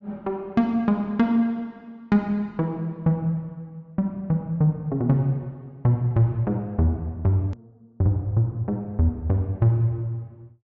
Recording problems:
treble cut off; nothing above 8 kHz
edit click; at 7.5 s

